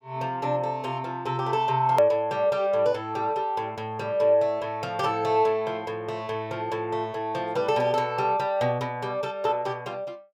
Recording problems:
hard cut with a click; at 2 s

